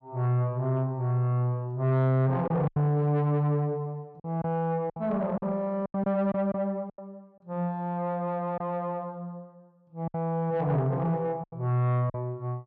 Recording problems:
distorted audio; soft clipping, signal-to-distortion ratio 11 dB
lost packets; 6% of the sound replaced, filled with silence

